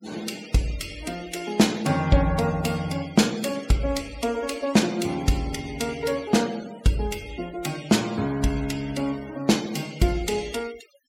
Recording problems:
noise reduction artefacts; signal-to-artefact ratio 17 dB

